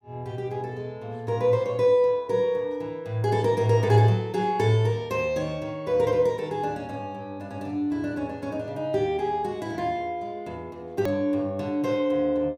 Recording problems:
hard cut with a click; at 11 s

